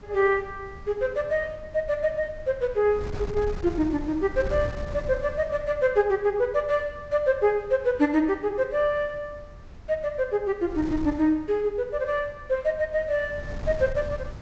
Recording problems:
treble cut off; nothing above 8 kHz
wind on the microphone; below 140 Hz, SNR 15 dB

